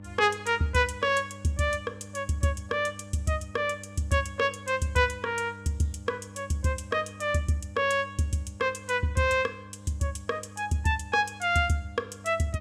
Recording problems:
mains hum; 50 Hz, harmonics up to 900 Hz, SNR 18 dB

